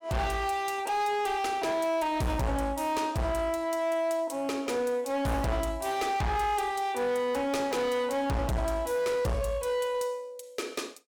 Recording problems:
distorted audio; hard clipping, signal-to-distortion ratio 7 dB

